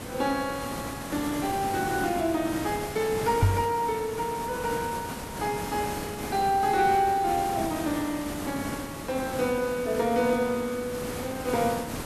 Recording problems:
background hiss; slope -5 dB per octave, SNR 7 dB
microphone bump; at 3.5 s; peak +9 dB vs average level

